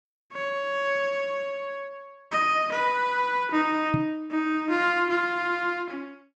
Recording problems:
microphone bump; at 4 s; peak +3 dB vs average level

